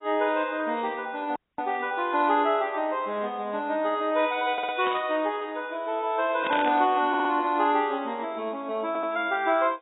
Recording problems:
lossy compression; AAC, log-spectral distance 3 dB, nothing above 3.5 kHz
dropout; at 1.5 s
stutter; at 4.5 s, at 7 s and at 9 s
burst of static; at 5 s and at 6.5 s; peak -3 dB vs average level

